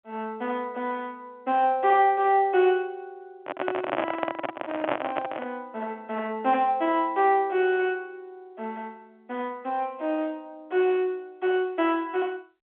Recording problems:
phone line; 260 Hz to 3.3 kHz, G.711
microphone handling noise; from 3.5 to 5.5 s; peak +3 dB vs average level

